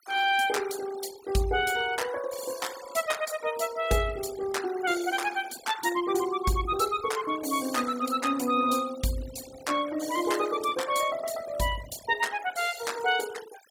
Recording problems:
noise reduction artefacts; signal-to-artefact ratio 15 dB

